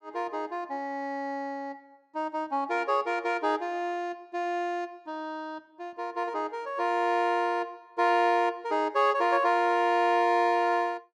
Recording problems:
none

